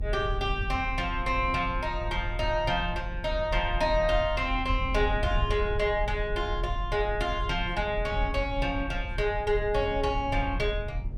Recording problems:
low-frequency rumble; below 74 Hz, strongest tone 36 Hz, SNR 6 dB

